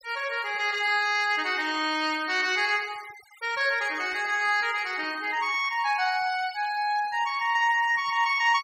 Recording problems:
denoising artefacts; signal-to-artefact ratio 21 dB

